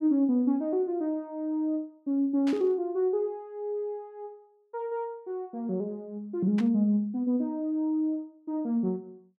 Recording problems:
burst of static; at 2.5 s and at 6.5 s; peak -7 dB vs average level

